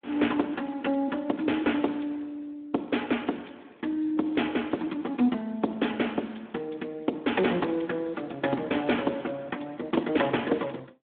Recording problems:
telephone audio; 240 Hz to 3.5 kHz, Speex

